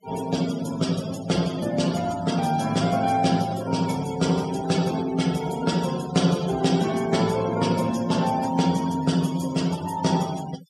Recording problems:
denoising artefacts; signal-to-artefact ratio 15 dB

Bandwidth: 16 kHz